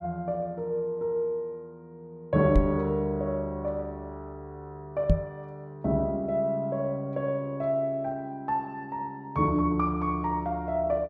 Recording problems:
knock on the microphone; at 2.5 s and at 5 s; peak +9 dB vs average level

